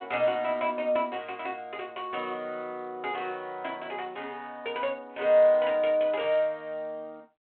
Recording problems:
phone line; 190 Hz to 3.3 kHz, G.726

